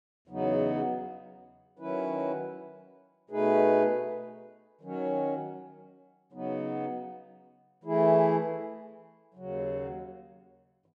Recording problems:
none

